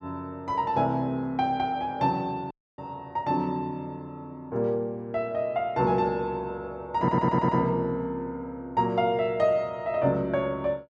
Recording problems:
audio cutting out; at 2.5 s
audio stuttering; at 7 s

